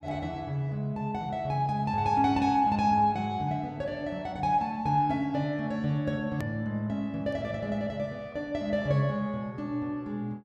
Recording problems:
click at an edit; at 6.5 s

